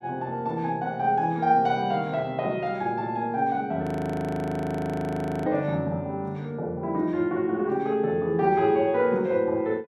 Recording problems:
audio freezing; at 4 s for 1.5 s

